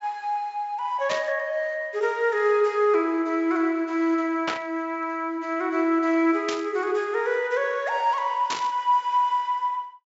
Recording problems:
low-pass filter; nothing above 8 kHz
burst of static; 4 times, first at 1 s; peak 0 dB vs average level

